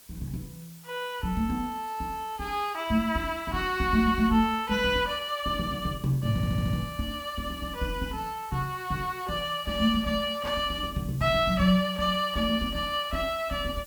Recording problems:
background hiss; slope 0 dB per octave, SNR 21 dB
audio stuttering; at 6.5 s

